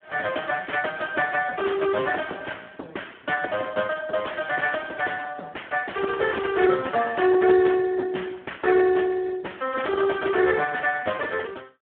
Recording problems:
telephone audio; 280 Hz to 3.1 kHz, Speex

